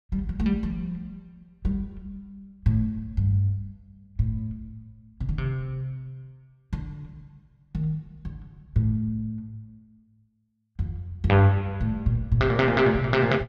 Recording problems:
none

